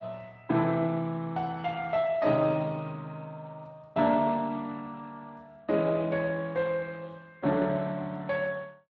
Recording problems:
lossy compression; Speex, log-spectral distance 3 dB

